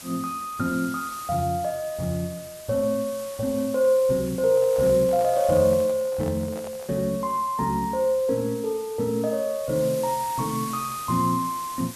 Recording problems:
hiss; slope 0 dB per octave, SNR 16 dB
handling noise; from 4.5 to 7 s; peak -11 dB vs average level

